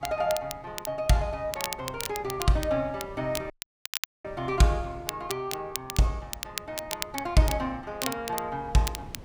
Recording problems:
wind noise; below 350 Hz, SNR 20 dB
crackle; vinyl, SNR 8 dB
audio cutting out; at 3.5 s for 0.5 s

